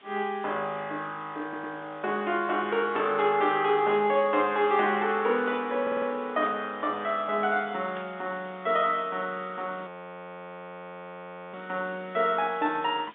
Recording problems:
telephone audio; 220 Hz to 3.7 kHz, G.711
hiss; SNR 26 dB
audio stuttering; at 1.5 s and at 6 s
burst of static; 4 times, first at 3 s; peak -12 dB vs average level
frozen audio; at 10 s for 1.5 s

